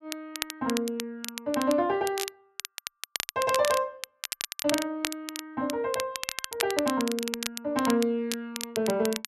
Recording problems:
crackle; vinyl, SNR 6 dB

